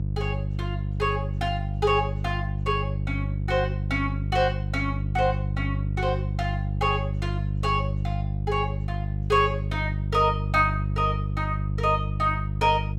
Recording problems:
electrical hum; 50 Hz, harmonics up to 350 Hz, SNR 1 dB

